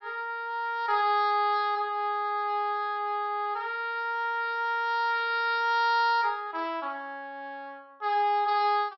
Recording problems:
treble missing; nothing above 5.6 kHz

